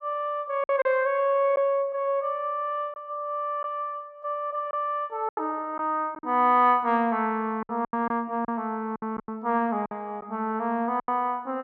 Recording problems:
packet loss; 7% of the sound replaced, filled with silence

